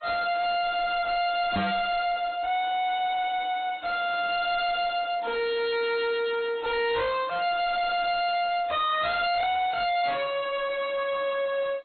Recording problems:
lossy compression; AAC, then MP2, log-spectral distance 4 dB, nothing above 3.9 kHz
distorted audio; soft clipping, signal-to-distortion ratio 6 dB
knock on the microphone; at 1.5 s; peak +5 dB vs average level

